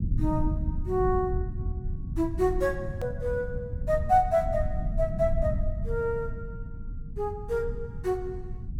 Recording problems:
rumble; below 110 Hz, SNR 5 dB
hard cut with a click; at 3 s

